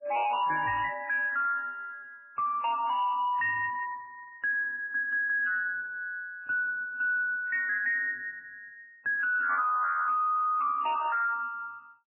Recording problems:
lossy compression; MP3, log-spectral distance 3 dB, nothing above 2.9 kHz
distorted audio; soft clipping, signal-to-distortion ratio 6 dB

